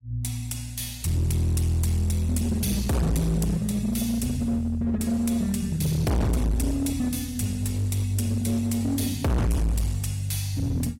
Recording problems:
lossy compression; AAC, log-spectral distance 3 dB, nothing above 16 kHz
distortion; hard clipping, uneven, signal-to-distortion ratio 6 dB

